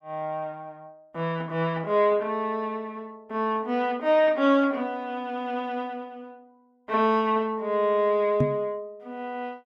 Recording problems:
microphone bump; at 8.5 s; peak +5 dB vs average level

